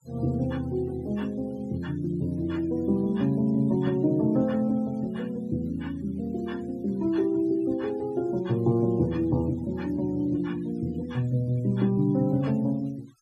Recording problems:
noise reduction artefacts; signal-to-artefact ratio 26 dB

